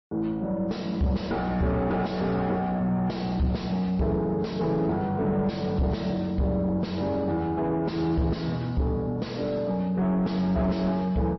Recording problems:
lossy codec; MP3, log-spectral distance 2 dB, nothing above 5.7 kHz
distortion; soft clipping, signal-to-distortion ratio 7 dB

